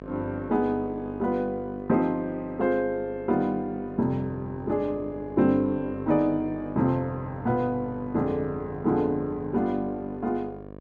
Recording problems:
electrical hum; 50 Hz, harmonics up to 1.7 kHz, SNR 13 dB

